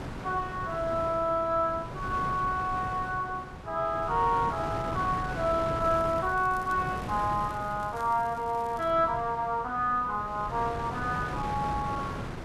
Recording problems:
wind noise; below 900 Hz, SNR 9 dB
crackle; from 6 to 9 s; loose cable, SNR 27 dB

